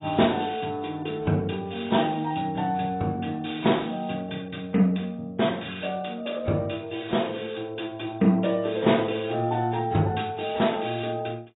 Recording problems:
codec artefacts; AAC, log-spectral distance 5 dB, nothing above 3.8 kHz

